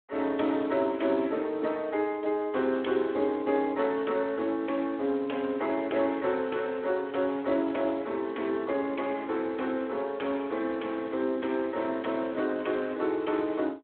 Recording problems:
phone line; 240 Hz to 3.6 kHz, Speex

